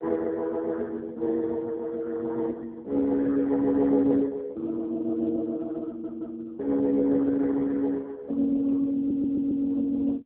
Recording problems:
telephone audio; 240 Hz to 2 kHz, AMR-NB
stutter; at 6 s and at 9 s

